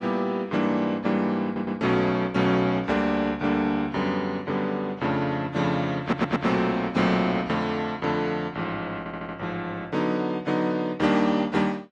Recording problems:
codec artefacts; AAC, log-spectral distance 2 dB, nothing above 10.1 kHz
audio stuttering; at 1.5 s, at 6 s and at 9 s

